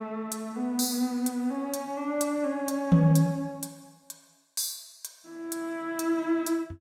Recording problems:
none

